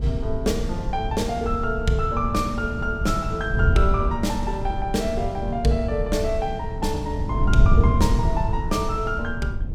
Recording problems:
wind noise; below 98 Hz, SNR 1 dB

